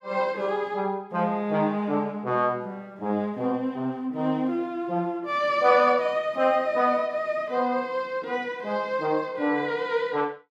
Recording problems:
none

